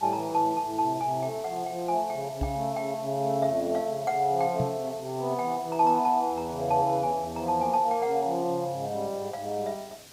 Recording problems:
background hiss; SNR 19 dB
knock on the microphone; at 2.5 s and at 4.5 s; peak +1 dB vs average level

